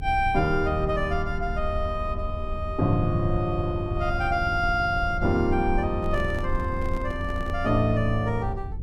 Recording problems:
electrical hum; 60 Hz, harmonics up to 480 Hz, SNR 17 dB
low-frequency rumble; below 78 Hz, strongest tone 20 Hz, SNR 8 dB
handling noise; from 6 to 7.5 s; peak -9 dB vs average level

